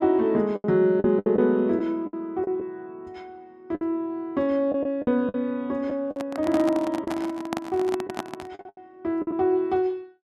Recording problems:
packet loss; 9% of the sound replaced, filled with the last packet
handling noise; from 6 to 8.5 s; peak -1 dB vs average level

